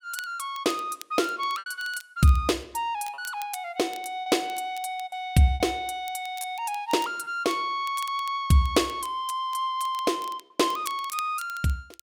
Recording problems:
crackle; vinyl, SNR 19 dB
lost packets; 3% of the sound replaced, filled with repeated pitch periods

